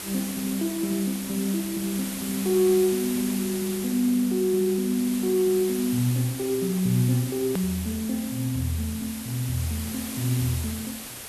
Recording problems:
background hiss; slope -1 dB per octave, SNR 9 dB
hard cut with a click; at 7.5 s

